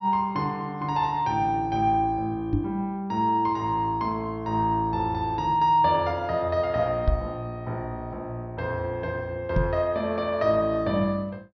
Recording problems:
low-pass filter; nothing above 5.8 kHz
microphone thump; at 2.5 s, at 7 s and at 9.5 s; peak +5 dB vs average level

